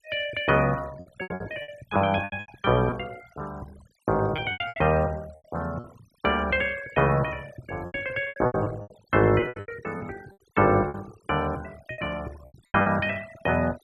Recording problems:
denoising artefacts; signal-to-artefact ratio 23 dB
lost packets; 12% of the sound replaced, filled with repeated pitch periods

